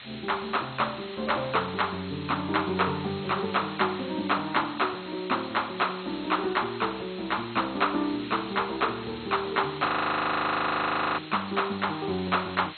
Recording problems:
lossy compression; MP2, log-spectral distance 21 dB, nothing above 4.2 kHz
background hiss; SNR 14 dB
frozen audio; at 10 s for 1.5 s

